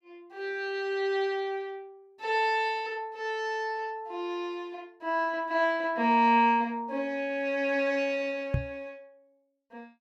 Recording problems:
microphone bump; at 8.5 s; peak +4 dB vs average level

